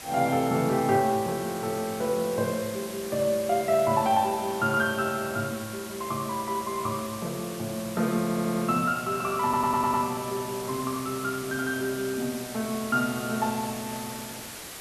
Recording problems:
hiss; slope -2 dB per octave, SNR 11 dB
stutter; at 8 s and at 9.5 s

